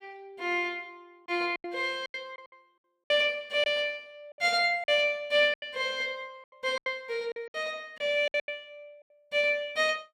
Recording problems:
packet loss; 10% of the sound replaced, filled with silence

